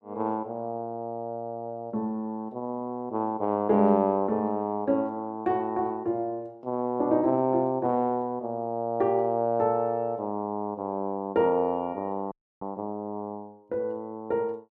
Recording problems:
audio freezing; at 12 s

